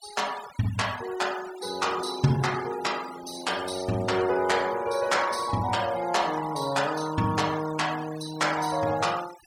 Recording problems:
denoising artefacts; signal-to-artefact ratio 15 dB

